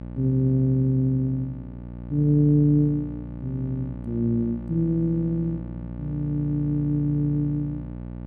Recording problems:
hum; 60 Hz, harmonics up to 900 Hz, SNR 12 dB

